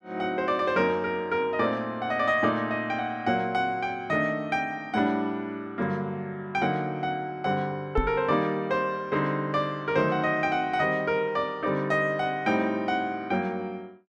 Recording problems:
knock on the microphone; at 8 s; peak +3 dB vs average level

